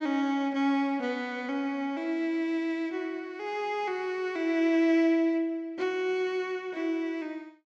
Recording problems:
none

